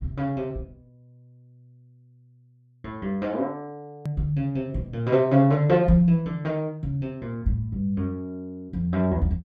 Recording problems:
hard cut with a click; at 4 s

